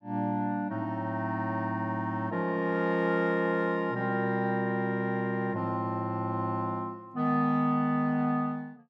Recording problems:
none

